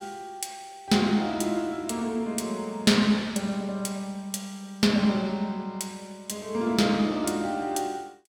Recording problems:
none

